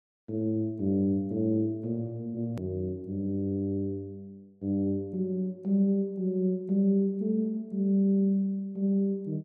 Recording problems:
click at an edit; at 2.5 s

